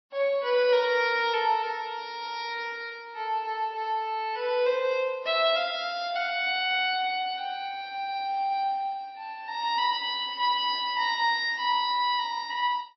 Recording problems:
codec artefacts; MP3, log-spectral distance 2 dB, nothing above 4.6 kHz

